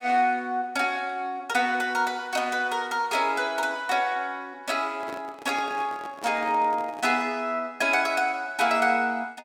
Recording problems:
microphone handling noise; from 5 to 7.5 s; peak -10 dB vs average level

